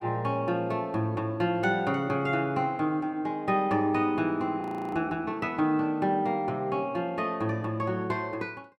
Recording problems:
frozen audio; at 4.5 s

